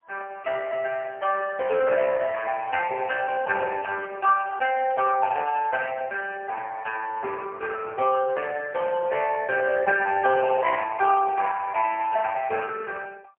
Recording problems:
telephone audio; 340 Hz to 2.6 kHz, AMR-NB, then MP3

